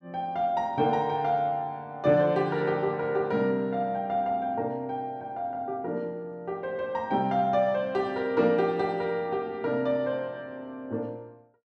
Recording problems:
none

